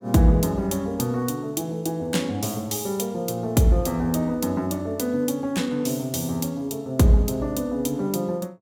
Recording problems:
none

